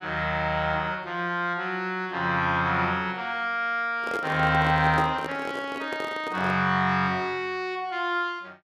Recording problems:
microphone handling noise; from 4 to 6.5 s; peak -2 dB vs average level

